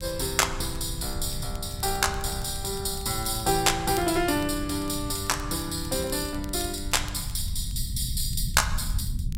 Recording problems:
rumble; below 100 Hz, SNR 9 dB
crackling; vinyl, SNR 21 dB

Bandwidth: 16 kHz